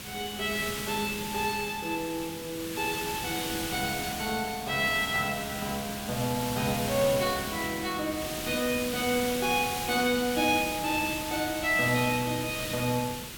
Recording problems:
background hiss; SNR 6 dB

